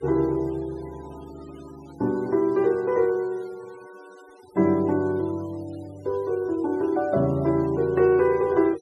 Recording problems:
noise reduction artefacts; signal-to-artefact ratio 27 dB

